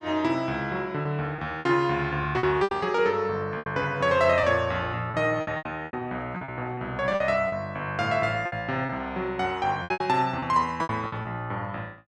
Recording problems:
packet loss; 11% of the sound replaced, filled with repeated pitch periods

